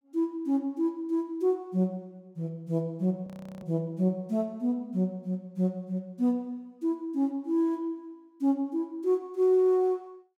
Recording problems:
frozen audio; at 3.5 s

